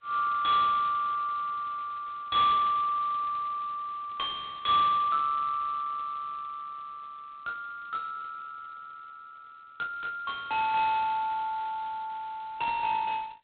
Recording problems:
phone line; 970 Hz to 2.5 kHz, G.726

